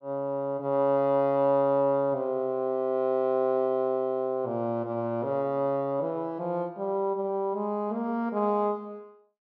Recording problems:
none

